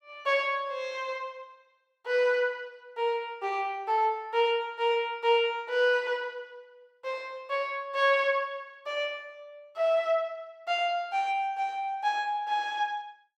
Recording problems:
none

